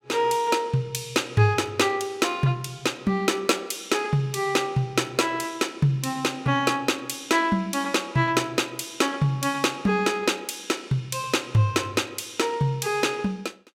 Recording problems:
none

